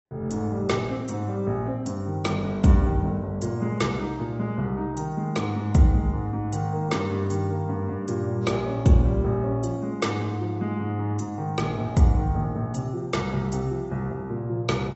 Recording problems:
codec artefacts; AAC, log-spectral distance 2 dB, nothing above 7.8 kHz

